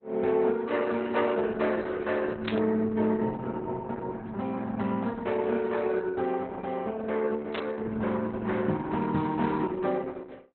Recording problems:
lossy codec; Opus, log-spectral distance 4 dB, nothing above 4 kHz
static burst; at 2.5 s and at 7.5 s; peak 0 dB vs average level

